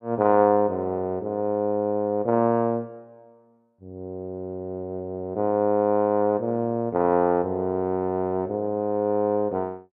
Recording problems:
none

